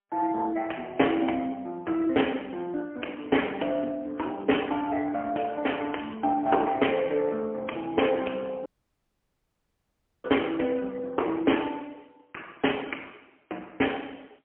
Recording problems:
phone line; 240 Hz to 3.2 kHz, AMR-NB, then MP3
audio cutting out; at 8.5 s for 1.5 s

